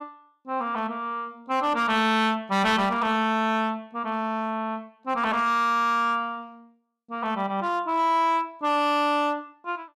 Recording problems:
distorted audio; hard clipping, uneven, signal-to-distortion ratio 11 dB

